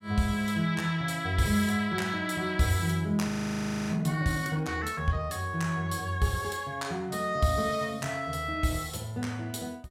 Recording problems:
frozen audio; at 3.5 s for 0.5 s

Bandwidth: 16 kHz